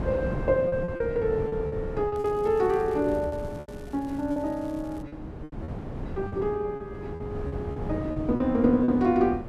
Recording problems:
wind noise; below 320 Hz, SNR 9 dB
packet loss; 10% of the sound replaced, filled with repeated pitch periods
crackle; from 2 to 5 s; loose cable, SNR 29 dB

